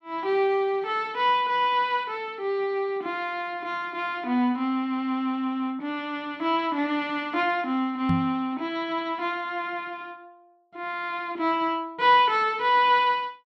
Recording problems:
microphone bump; at 8 s; peak +3 dB vs average level

